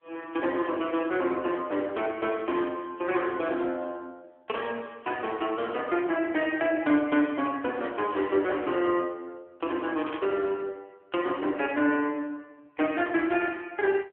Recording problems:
phone line; 260 Hz to 3.3 kHz, AMR-NB
burst of static; at 10 s; peak -7 dB vs average level

